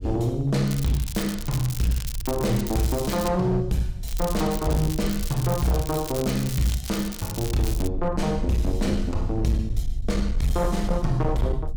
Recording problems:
distorted audio; hard clipping, signal-to-distortion ratio 12 dB
low-frequency rumble; below 58 Hz, SNR 8 dB
crackle; from 0.5 to 3.5 s and from 4 to 8 s; loose cable, SNR 10 dB

